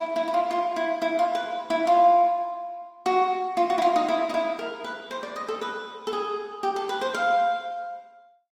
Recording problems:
lossy codec; Opus, log-spectral distance 2 dB, nothing above 19 kHz

